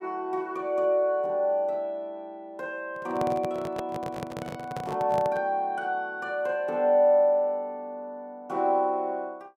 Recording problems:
microphone handling noise; from 3 to 5.5 s; peak -3 dB vs average level

